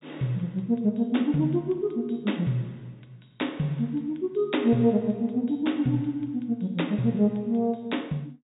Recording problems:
low-pass filter; nothing above 4 kHz

